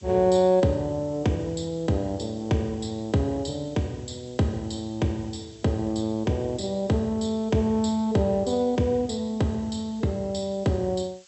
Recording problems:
treble missing; nothing above 8 kHz
background hiss; slope +4 dB per octave, SNR 27 dB

